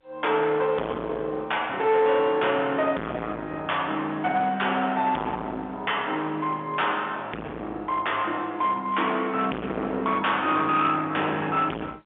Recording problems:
telephone audio; 260 Hz to 3.8 kHz, G.711
distorted audio; hard clipping, uneven, signal-to-distortion ratio 5 dB

